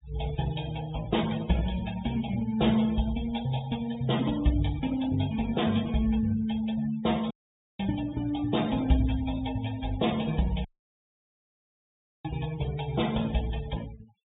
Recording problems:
treble cut off; nothing above 4 kHz
denoising artefacts; signal-to-artefact ratio 15 dB
audio cutting out; at 7.5 s and at 11 s for 1.5 s

